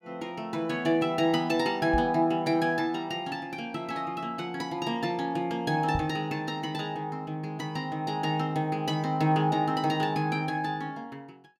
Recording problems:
microphone thump; at 2 s and at 6 s; peak 0 dB vs average level

